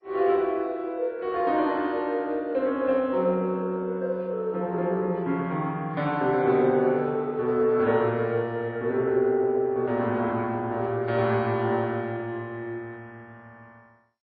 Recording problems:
lossy codec; MP3, then MP2, log-spectral distance 2 dB, nothing above 4.5 kHz

